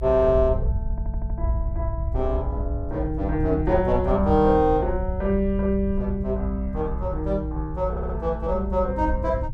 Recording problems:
low-frequency rumble; below 82 Hz, SNR 5 dB
stutter; at 1 s and at 8 s

